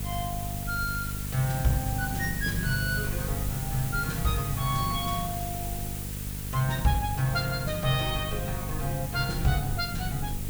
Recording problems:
hum; 50 Hz, harmonics up to 500 Hz, SNR 6 dB
hiss; slope +1 dB per octave, SNR 7 dB
low-frequency rumble; below 72 Hz, SNR 13 dB

